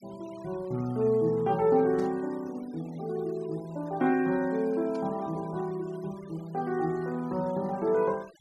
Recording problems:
noise reduction artefacts; signal-to-artefact ratio 23 dB
burst of static; at 2 s and at 5 s; peak -18 dB vs average level

